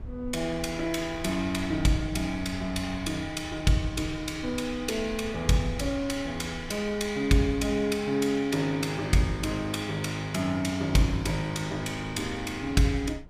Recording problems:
wind on the microphone; below 110 Hz, SNR 17 dB

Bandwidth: 15.5 kHz